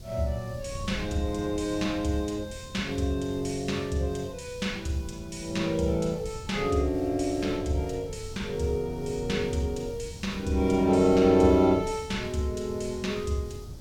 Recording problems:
hiss; SNR 26 dB
wind noise; below 140 Hz, SNR 14 dB

